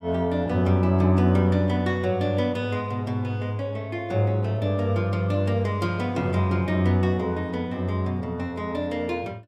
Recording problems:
none

